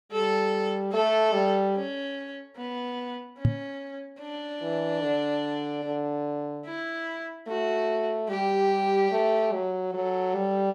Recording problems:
microphone thump; at 3.5 s; peak +8 dB vs average level

